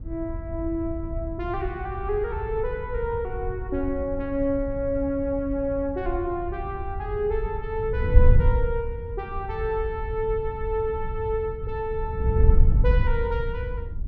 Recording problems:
wind noise; below 78 Hz, SNR 0 dB

